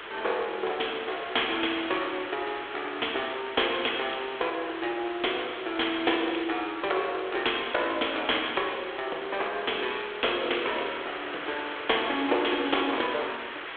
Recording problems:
telephone audio; 300 Hz to 3.5 kHz, G.726
background hiss; SNR 9 dB

